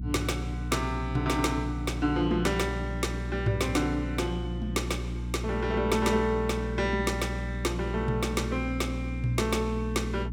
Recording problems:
hum; 60 Hz, harmonics up to 300 Hz, SNR 5 dB

